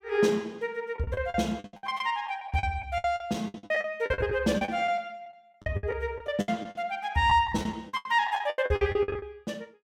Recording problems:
packet loss; 19% of the sound replaced, filled with the last packet

